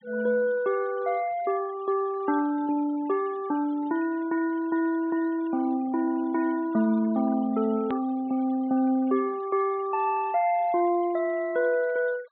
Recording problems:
treble missing; nothing above 4 kHz
noise reduction artefacts; signal-to-artefact ratio 24 dB
click at an edit; at 8 s

